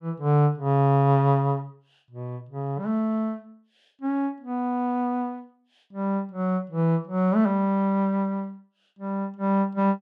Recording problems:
none

